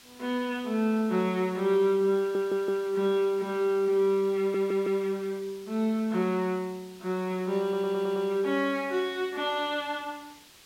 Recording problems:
background hiss; slope 0 dB per octave, SNR 23 dB
stutter; at 2 s, at 4.5 s and at 7.5 s

